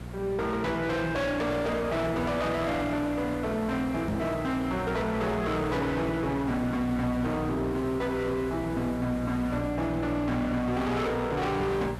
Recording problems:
distorted audio; hard clipping, uneven, signal-to-distortion ratio 7 dB
hum; 60 Hz, harmonics up to 480 Hz, SNR 10 dB
background hiss; slope -6 dB per octave, SNR 15 dB
knock on the microphone; at 4 s; peak +2 dB vs average level

